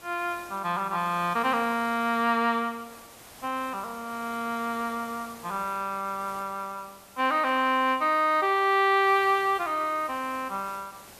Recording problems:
hiss; slope -3 dB per octave, SNR 21 dB

